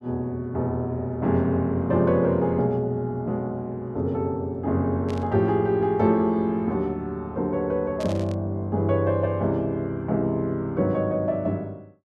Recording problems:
burst of static; at 5 s and at 8 s; peak -12 dB vs average level

